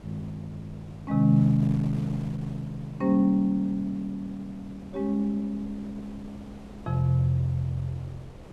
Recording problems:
wind on the microphone; below 480 Hz, SNR 19 dB

